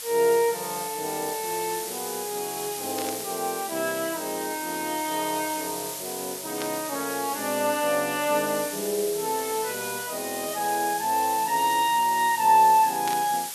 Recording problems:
hiss; slope +2 dB per octave, SNR 7 dB
burst of static; at 3 s, at 6.5 s and at 13 s; peak -4 dB vs average level

